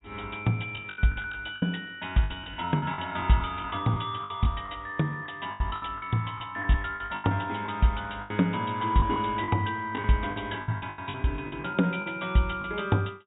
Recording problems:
treble cut off; nothing above 4 kHz
lost packets; 13% of the sound replaced, filled with the last packet

